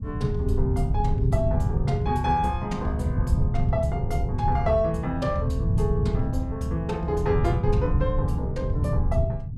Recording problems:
rumble; below 130 Hz, SNR 0 dB

